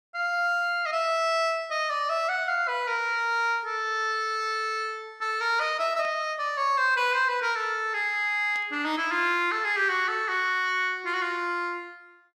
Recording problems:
burst of static; at 6 s and at 8.5 s; peak -15 dB vs average level

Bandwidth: 14.5 kHz